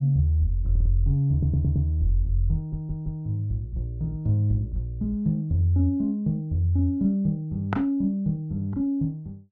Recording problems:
audio stuttering; at 0.5 s, at 1.5 s and at 2.5 s

